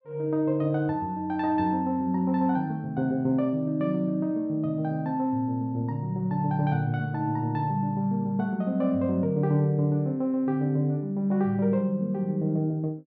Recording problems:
none

